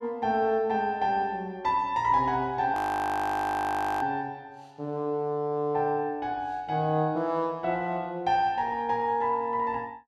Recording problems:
audio freezing; at 2.5 s for 1.5 s

